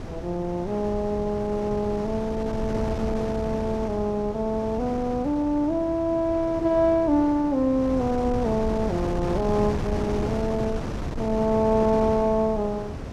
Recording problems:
wind noise; below 430 Hz, SNR 8 dB

